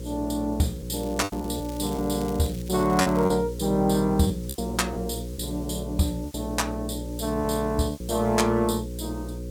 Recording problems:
electrical hum; 60 Hz, harmonics up to 540 Hz, SNR 9 dB
background hiss; slope +1 dB per octave, SNR 23 dB
lost packets; 6% of the sound replaced, filled with repeated pitch periods
crackle; from 1 to 3.5 s; loose cable, SNR 20 dB

